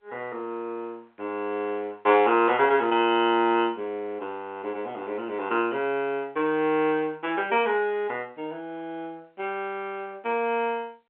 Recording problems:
phone line; 280 Hz to 3.3 kHz, G.711

